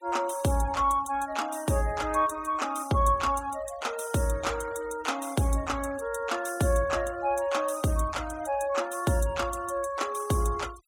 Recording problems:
noise reduction artefacts; signal-to-artefact ratio 20 dB

